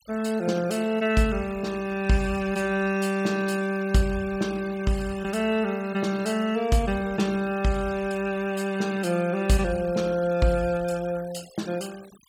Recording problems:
noise reduction artefacts; signal-to-artefact ratio 19 dB

